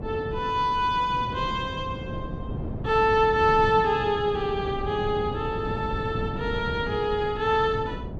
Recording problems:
wind noise; below 290 Hz, SNR 9 dB

